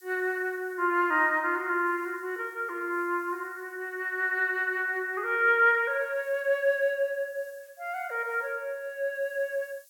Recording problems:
hiss; SNR 29 dB

